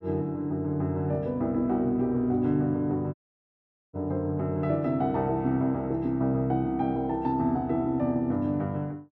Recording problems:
audio cutting out; at 3 s for 1 s

